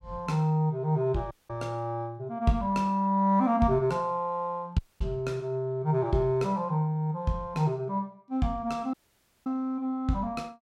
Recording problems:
dropout; at 1.5 s, at 5 s and at 9 s for 0.5 s

